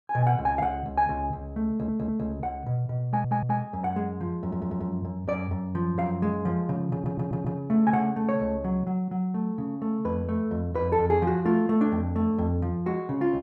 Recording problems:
stutter; 4 times, first at 1.5 s

